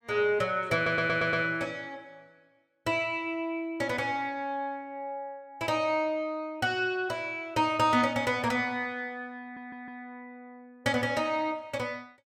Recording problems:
audio stuttering; at 1 s and at 9.5 s

